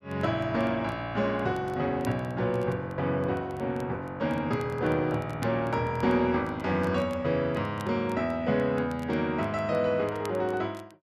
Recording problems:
crackle; vinyl, SNR 27 dB

